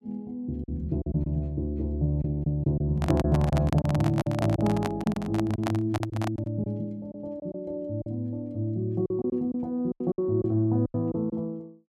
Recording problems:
packet loss; 8% of the sound replaced, filled with silence
microphone handling noise; from 3 to 6.5 s; peak +2 dB vs average level

